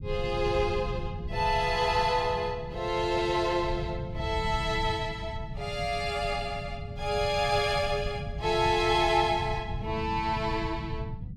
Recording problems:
low-frequency rumble; below 140 Hz, SNR 9 dB

